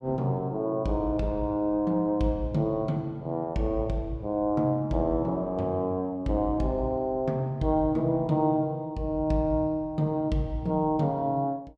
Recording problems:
none

